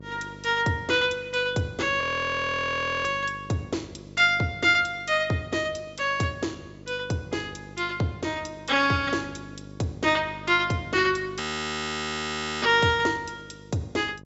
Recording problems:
treble cut off; nothing above 8 kHz
hum; 50 Hz, harmonics up to 650 Hz, SNR 19 dB
frozen audio; at 2 s for 1 s and at 11 s for 1 s

